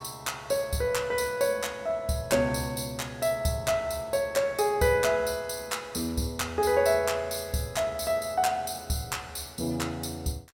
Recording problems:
none

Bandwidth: 16.5 kHz